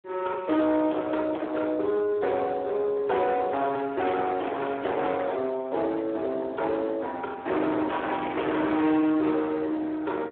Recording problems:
telephone audio; 280 Hz to 2.2 kHz, Speex
distorted audio; hard clipping, uneven, signal-to-distortion ratio 6 dB

